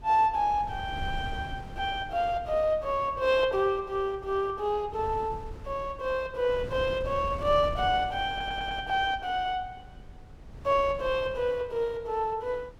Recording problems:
wind noise; below 150 Hz, SNR 15 dB
stutter; at 8.5 s

